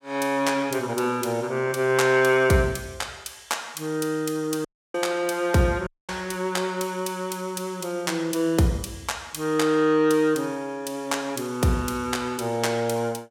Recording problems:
audio cutting out; at 4.5 s and at 6 s

